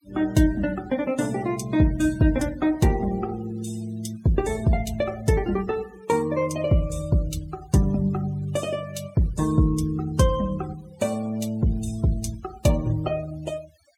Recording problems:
noise reduction artefacts; signal-to-artefact ratio 21 dB

